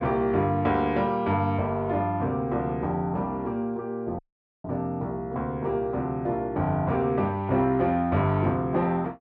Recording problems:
dropout; at 4 s

